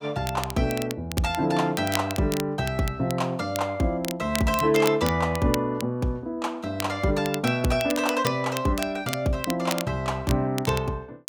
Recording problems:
crackling; vinyl, SNR 11 dB

